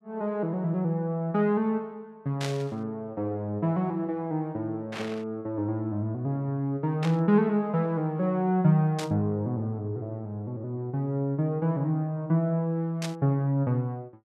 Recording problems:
burst of static; 5 times, first at 2.5 s; peak -3 dB vs average level

